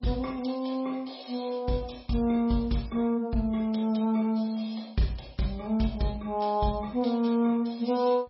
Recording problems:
lossy codec; MP3, log-spectral distance 4 dB, nothing above 5.5 kHz

